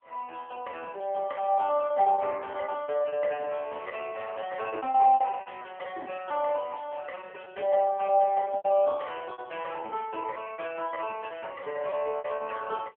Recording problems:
phone line; 320 Hz to 3.3 kHz, AMR-NB
lost packets; 17% of the sound replaced, filled with repeated pitch periods

